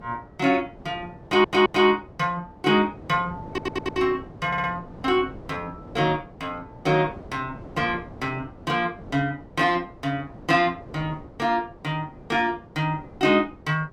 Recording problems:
wind on the microphone; below 510 Hz, SNR 18 dB
audio stuttering; at 1 s, at 3.5 s and at 4.5 s

